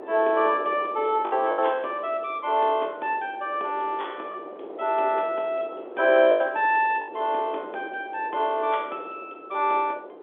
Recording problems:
phone line; 300 Hz to 3.5 kHz, G.711
wind noise; below 630 Hz, SNR 16 dB
packet loss; 3% of the sound replaced, filled with the last packet

